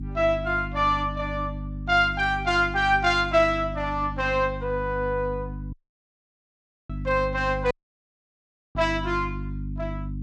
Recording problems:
hum; 50 Hz, harmonics up to 300 Hz, SNR 10 dB
dropout; at 5.5 s for 1 s and at 7.5 s for 1 s

